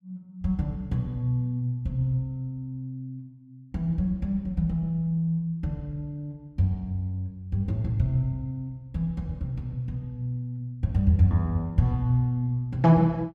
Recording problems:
none

